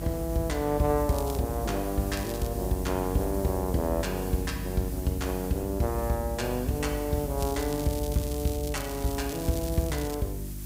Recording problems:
hum; 50 Hz, harmonics up to 350 Hz, SNR 8 dB
hiss; slope 0 dB per octave, SNR 13 dB
crackling; at 1 s, at 2 s and from 7.5 to 10 s; loose cable, SNR 13 dB

